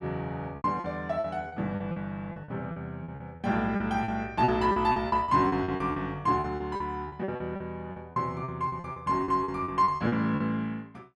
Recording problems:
lost packets; 16% of the sound replaced, filled with repeated pitch periods

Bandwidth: 12.5 kHz